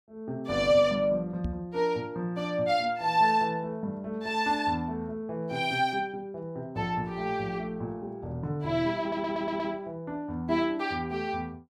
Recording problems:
microphone bump; at 1.5 s; peak 0 dB vs average level
stutter; at 9 s

